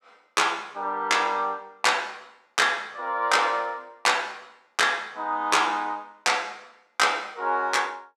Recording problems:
none

